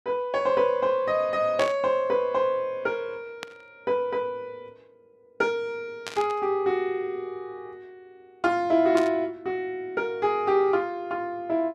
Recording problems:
static burst; 4 times, first at 1.5 s; peak -3 dB vs average level

